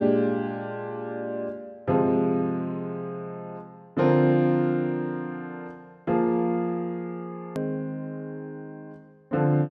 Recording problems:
click at an edit; at 7.5 s

